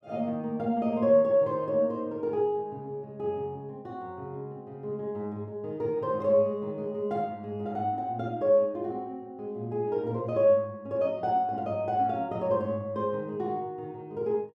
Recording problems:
none

